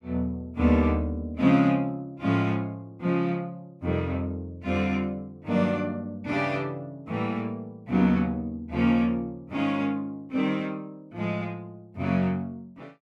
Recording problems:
none

